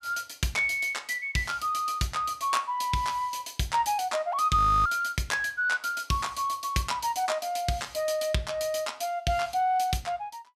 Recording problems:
frozen audio; at 4.5 s

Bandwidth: 14.5 kHz